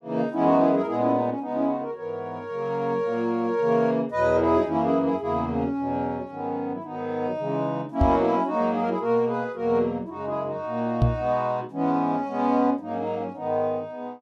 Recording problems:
microphone bump; at 8 s and at 11 s; peak +8 dB vs average level

